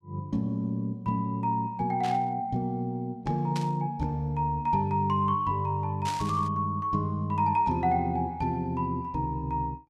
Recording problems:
static burst; at 2 s, at 3.5 s and at 6 s; peak -5 dB vs average level

